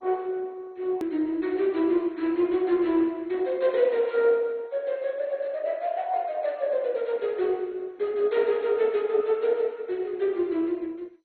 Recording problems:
lossy compression; MP2, then MP2, log-spectral distance 3 dB
edit click; at 1 s

